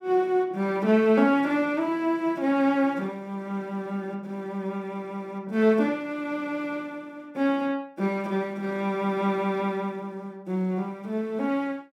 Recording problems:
none

